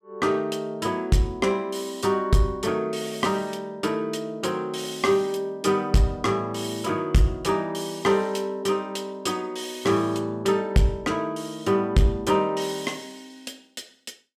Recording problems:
distortion; soft clipping, signal-to-distortion ratio 12 dB

